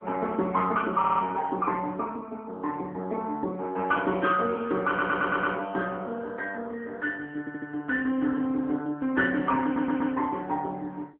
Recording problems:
telephone audio; 220 Hz to 3 kHz, AMR-NB
stutter; 4 times, first at 1 s

